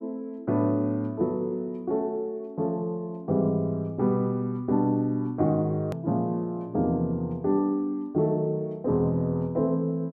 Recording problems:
hard cut with a click; at 6 s

